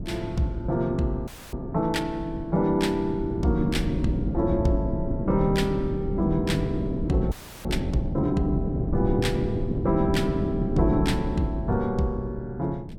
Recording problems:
wind on the microphone; below 270 Hz, SNR 4 dB
frozen audio; at 1.5 s and at 7.5 s

